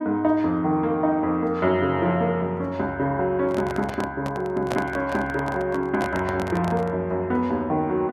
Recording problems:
handling noise; from 3.5 to 7 s; peak -1 dB vs average level

